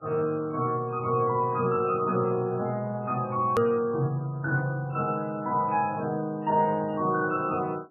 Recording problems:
lossy compression; MP3, log-spectral distance 2 dB, nothing above 13.1 kHz
edit click; at 3.5 s

